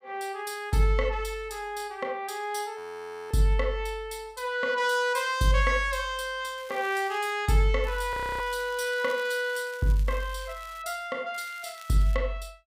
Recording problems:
audio freezing; at 3 s for 0.5 s and at 8 s
crackle; at 6.5 s, from 8 to 11 s and at 11 s; loose cable, SNR 22 dB

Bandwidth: 15.5 kHz